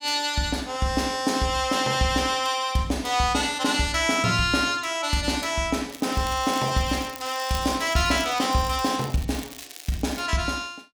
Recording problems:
crackling; from 6 to 10 s; loose cable, SNR 17 dB

